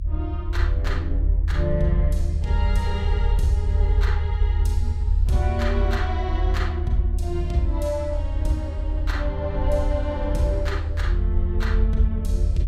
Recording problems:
rumble; below 78 Hz, strongest tone 44 Hz, SNR -5 dB

